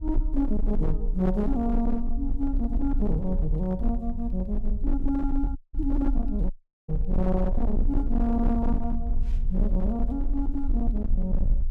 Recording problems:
distortion; hard clipping, signal-to-distortion ratio 12 dB
low-frequency rumble; below 44 Hz, strongest tone 22 Hz, SNR 2 dB
wind noise; below 74 Hz, SNR 9 dB
audio cutting out; at 5.5 s and at 6.5 s

